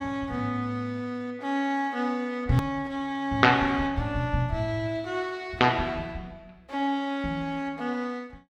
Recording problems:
hard cut with a click; at 2.5 s

